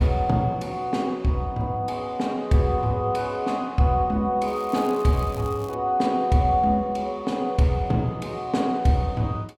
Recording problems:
crackling; from 4.5 to 5.5 s; loose cable, SNR 25 dB

